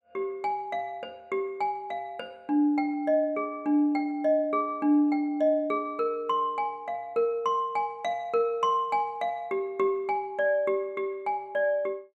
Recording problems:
none

